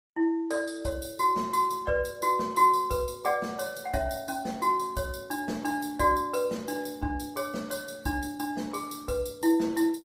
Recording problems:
codec artefacts; Opus, log-spectral distance 5 dB, nothing above 15.5 kHz

